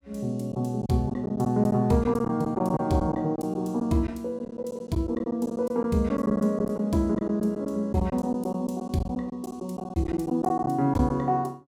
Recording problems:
lost packets; 10% of the sound replaced, filled with silence

